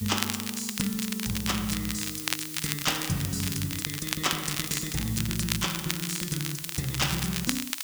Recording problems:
background hiss; slope +3 dB per octave, SNR 7 dB
crackle; vinyl, SNR 2 dB

